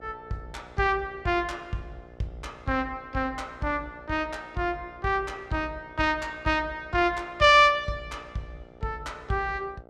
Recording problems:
hum; 60 Hz, harmonics up to 1.6 kHz, SNR 24 dB

